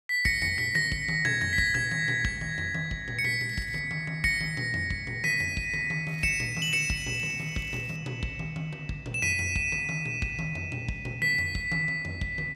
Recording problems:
crackle; at 3.5 s and from 6 to 8 s; loose cable, SNR 26 dB

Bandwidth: 15 kHz